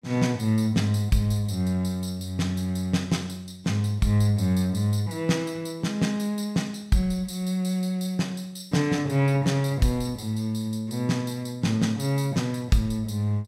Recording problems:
none

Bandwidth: 16 kHz